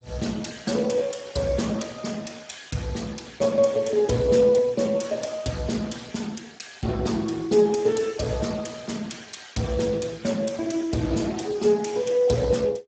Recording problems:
lossy compression; Speex, log-spectral distance 6 dB, nothing above 7.8 kHz

